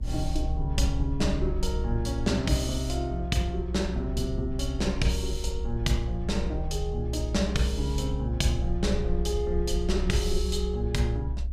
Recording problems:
rumble; below 64 Hz, strongest tone 62 Hz, SNR 3 dB

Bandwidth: 15.5 kHz